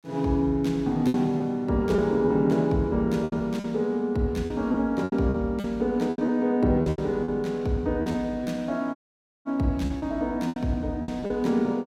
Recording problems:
lost packets; 10% of the sound replaced, filled with repeated pitch periods
dropout; at 9 s for 0.5 s

